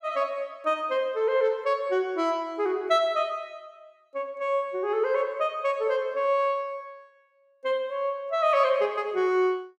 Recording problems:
none

